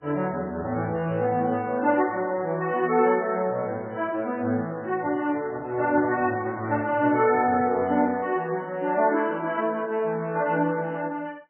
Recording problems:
codec artefacts; MP3, log-spectral distance 3 dB, nothing above 3 kHz
handling noise; from 5 to 8 s; peak -6 dB vs average level

